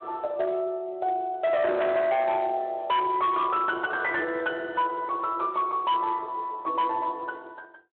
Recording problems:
phone line; 280 Hz to 4 kHz, Speex
distorted audio; hard clipping, signal-to-distortion ratio 10 dB

